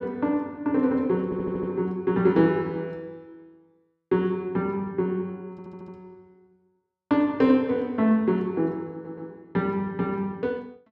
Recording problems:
audio stuttering; at 1 s, at 5.5 s and at 9 s

